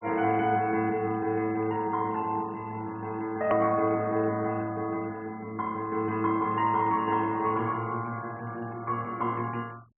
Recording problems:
treble cut off; nothing above 3 kHz
denoising artefacts; signal-to-artefact ratio 26 dB
click at an edit; at 3.5 s

